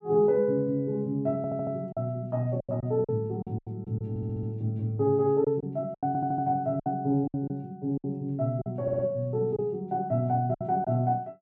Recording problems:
lost packets; 8% of the sound replaced, filled with silence
audio stuttering; 4 times, first at 1.5 s

